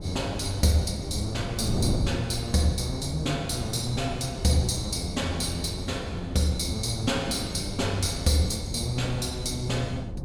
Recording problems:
wind noise; below 230 Hz, SNR 7 dB

